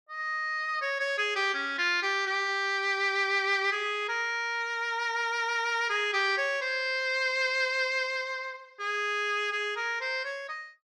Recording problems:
none

